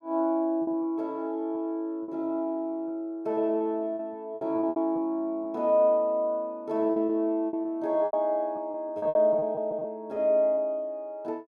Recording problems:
lost packets; 9% of the sound replaced, filled with repeated pitch periods

